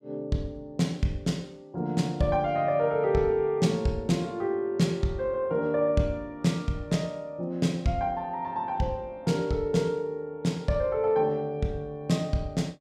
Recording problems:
none

